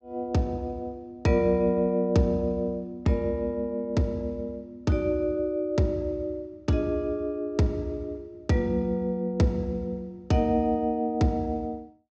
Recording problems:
treble cut off; nothing above 8 kHz

